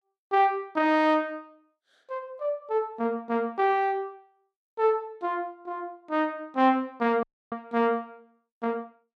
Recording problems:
audio cutting out; at 7 s

